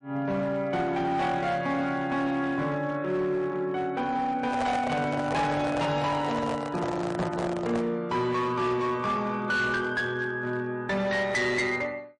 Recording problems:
codec artefacts; MP3, log-spectral distance 2 dB, nothing above 8.7 kHz
distorted audio; hard clipping, signal-to-distortion ratio 11 dB
microphone handling noise; from 4.5 to 8 s; peak 0 dB vs average level

